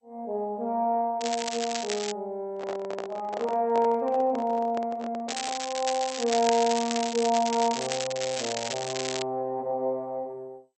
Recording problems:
lossy codec; MP2, log-spectral distance 7 dB
crackle; at 1 s and from 5.5 to 9 s; loose cable, SNR 5 dB
handling noise; from 2.5 to 5.5 s; peak -3 dB vs average level

